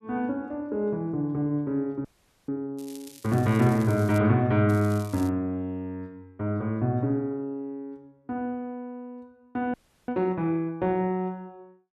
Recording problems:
audio freezing; at 2 s and at 9.5 s
crackle; from 3 to 4 s and at 4.5 s; loose cable, SNR 20 dB

